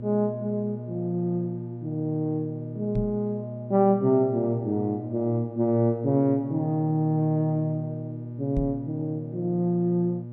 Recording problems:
hum; 60 Hz, harmonics up to 600 Hz, SNR 11 dB
knock on the microphone; at 3 s and at 8.5 s; peak +1 dB vs average level

